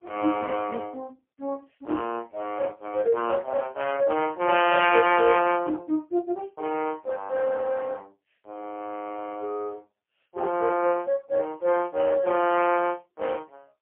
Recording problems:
telephone audio; 260 Hz to 3.1 kHz, AMR-NB, then MP3

